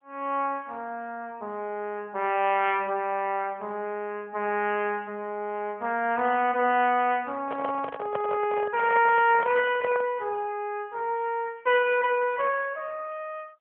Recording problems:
telephone audio; 220 Hz to 3.2 kHz, AMR-NB
handling noise; from 7.5 to 10 s; peak -1 dB vs average level

